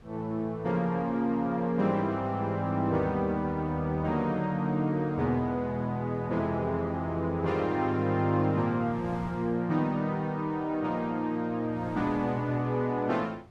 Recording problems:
wind noise; below 420 Hz, SNR 22 dB

